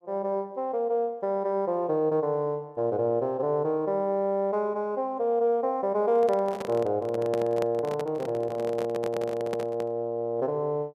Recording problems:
handling noise; from 6 to 10 s; peak -3 dB vs average level

